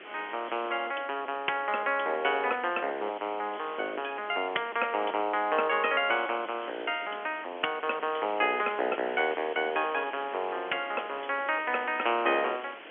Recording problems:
telephone audio; 260 Hz to 3.3 kHz, G.711
background hiss; SNR 16 dB

